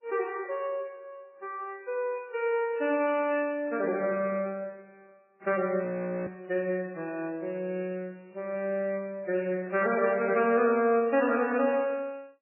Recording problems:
codec artefacts; MP3, then AAC, log-spectral distance 2 dB, nothing above 2.7 kHz
audio freezing; at 6 s

